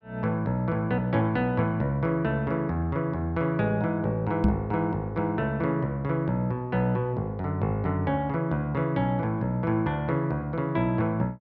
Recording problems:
knock on the microphone; at 4.5 s; peak +7 dB vs average level

